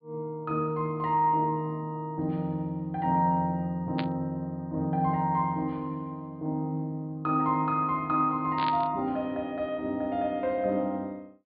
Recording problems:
treble missing; nothing above 4.7 kHz
static burst; at 4 s and at 8.5 s; peak -2 dB vs average level

